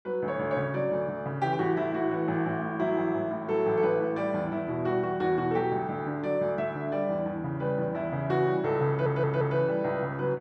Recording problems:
audio stuttering; at 9 s

